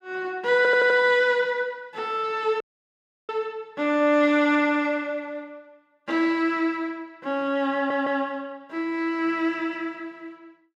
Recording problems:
audio stuttering; at 0.5 s and at 7.5 s
dropout; at 2.5 s for 0.5 s

